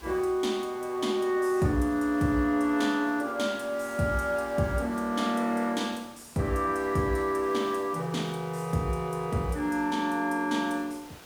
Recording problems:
background hiss; slope -3 dB per octave, SNR 22 dB

